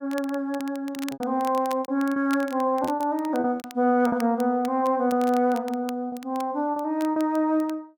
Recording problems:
crackle; vinyl, SNR 20 dB
packet loss; 9% of the sound replaced, filled with repeated pitch periods

